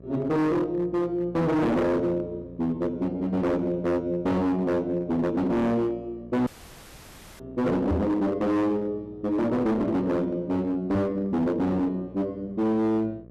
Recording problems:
distortion; hard clipping, signal-to-distortion ratio 8 dB
hum; 60 Hz, harmonics up to 720 Hz, SNR 22 dB
audio cutting out; at 6.5 s for 1 s
knock on the microphone; at 8 s and at 11 s; peak +2 dB vs average level

